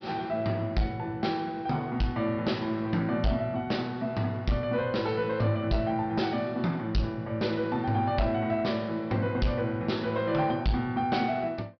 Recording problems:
low-pass filter; nothing above 5.5 kHz
distorted audio; soft clipping, signal-to-distortion ratio 12 dB

